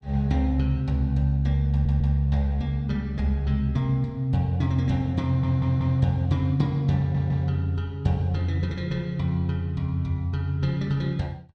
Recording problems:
stutter; at 1.5 s, at 5.5 s and at 7 s

